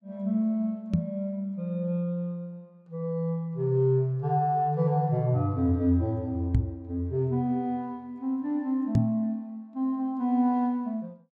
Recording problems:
knock on the microphone; at 1 s, at 6.5 s and at 9 s; peak +7 dB vs average level

